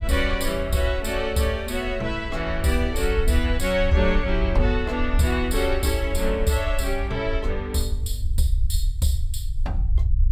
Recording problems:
rumble; below 68 Hz, SNR 4 dB

